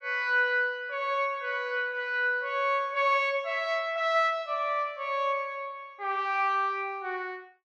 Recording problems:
none

